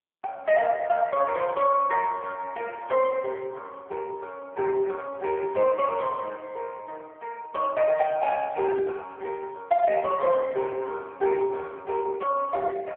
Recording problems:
phone line; 340 Hz to 2.5 kHz, AMR-NB

